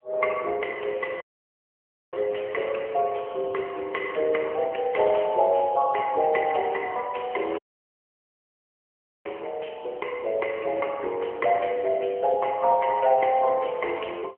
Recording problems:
phone line; 340 Hz to 3.1 kHz, AMR-NB
dropout; at 1 s for 1 s and at 7.5 s for 1.5 s

